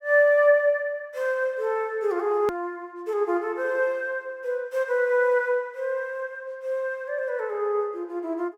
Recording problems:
hard cut with a click; at 2.5 s

